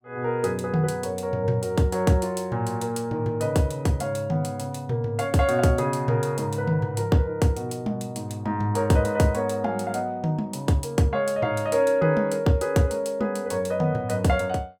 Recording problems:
none

